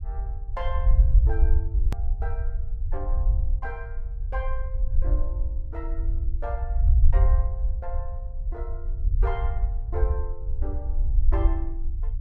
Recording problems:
rumble; below 62 Hz, SNR -12 dB
hard cut with a click; at 2 s

